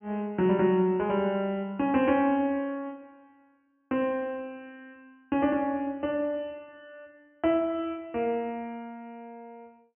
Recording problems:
treble missing; nothing above 3.1 kHz

